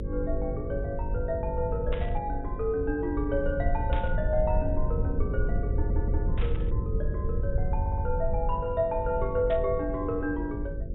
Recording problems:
low-pass filter; nothing above 3.8 kHz
hum; 50 Hz, harmonics up to 550 Hz, SNR 8 dB
rumble; below 84 Hz, SNR 1 dB
static burst; 4 times, first at 2 s; peak -5 dB vs average level
audio stuttering; at 5.5 s and at 8 s

